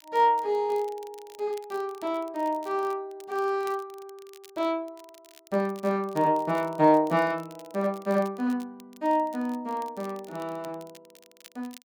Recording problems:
crackling; vinyl, SNR 26 dB

